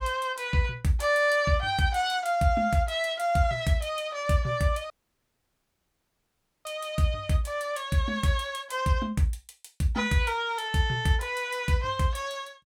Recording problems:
dropout; at 5 s for 2 s

